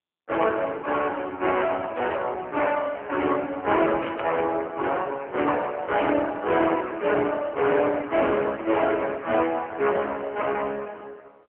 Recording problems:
telephone audio; 280 Hz to 3.2 kHz, AMR-NB
burst of static; at 2 s, at 4 s and at 6 s; peak -7 dB vs average level

